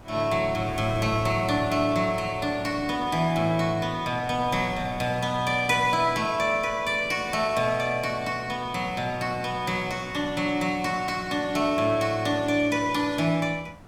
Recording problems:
wind noise; below 650 Hz, SNR 19 dB

